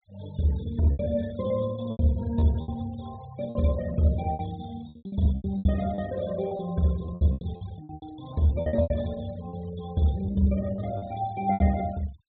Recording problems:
treble missing; nothing above 4 kHz
noise reduction artefacts; signal-to-artefact ratio 19 dB
lost packets; 13% of the sound replaced, filled with repeated pitch periods

